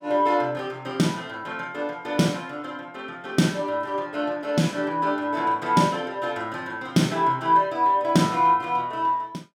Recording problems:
none

